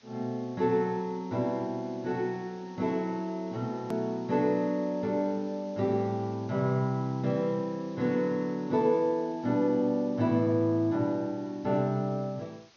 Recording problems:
treble cut off; nothing above 6.6 kHz
hiss; slope -1 dB per octave, SNR 27 dB
edit click; at 4 s

